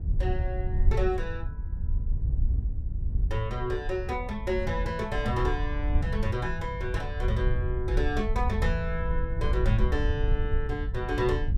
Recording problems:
wind on the microphone; below 74 Hz, SNR -1 dB

